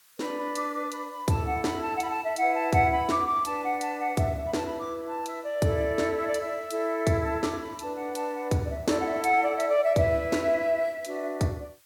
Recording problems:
background hiss; SNR 30 dB

